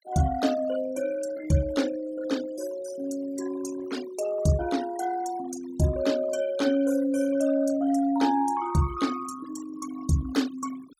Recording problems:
denoising artefacts; signal-to-artefact ratio 15 dB

